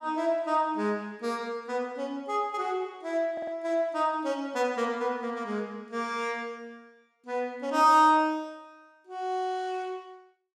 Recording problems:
audio stuttering; at 3.5 s

